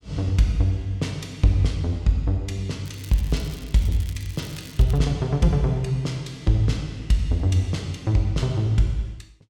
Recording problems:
crackling; from 3 to 5 s; loose cable, SNR 21 dB

